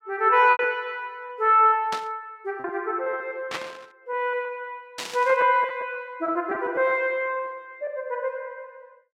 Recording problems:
packet loss; 7% of the sound replaced, filled with repeated pitch periods
static burst; at 2 s, at 3.5 s and at 5 s; peak -2 dB vs average level

